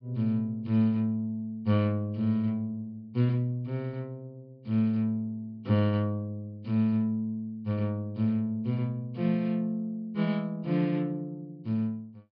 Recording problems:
treble cut off; nothing above 5.5 kHz

